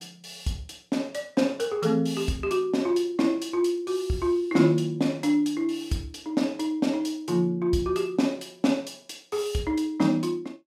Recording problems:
none

